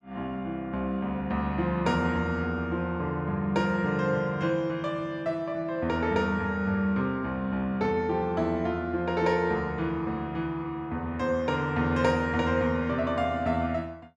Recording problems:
none

